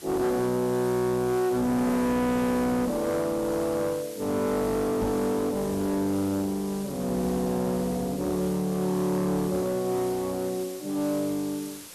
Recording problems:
distortion; hard clipping, uneven, signal-to-distortion ratio 6 dB
hiss; slope -1 dB per octave, SNR 16 dB
microphone bump; at 5 s; peak -1 dB vs average level

